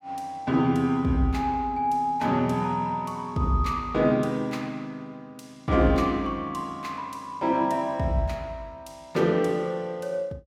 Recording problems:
none

